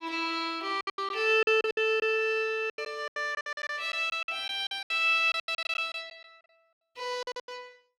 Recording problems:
packet loss; 17% of the sound replaced, filled with silence

